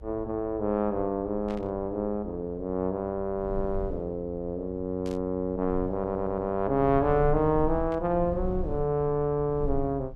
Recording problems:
rumble; below 74 Hz, strongest tone 18 Hz, SNR 13 dB
static burst; at 1.5 s, at 5 s and at 8 s; peak -14 dB vs average level
audio stuttering; at 6 s

